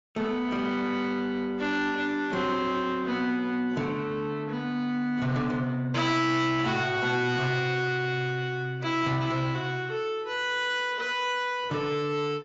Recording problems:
lossy compression; AAC, log-spectral distance 2 dB, nothing above 7.3 kHz
distorted audio; soft clipping, signal-to-distortion ratio 12 dB

